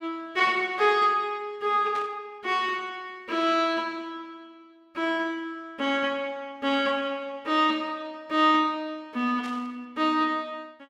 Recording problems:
static burst; at 2 s and at 9.5 s; peak -11 dB vs average level

